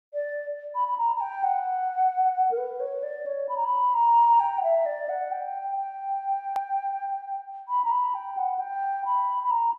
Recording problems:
hard cut with a click; at 6.5 s

